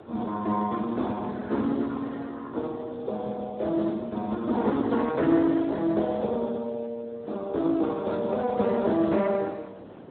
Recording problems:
telephone audio; 220 Hz to 2 kHz, Speex
wind on the microphone; below 610 Hz, SNR 18 dB

